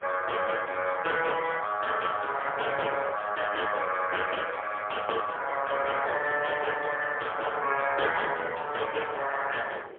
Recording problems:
phone line; 370 Hz to 3.4 kHz, AMR-NB, then MP3
wind noise; below 820 Hz, SNR 22 dB

